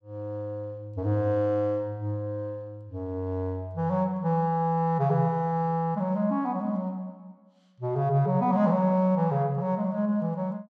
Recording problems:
none

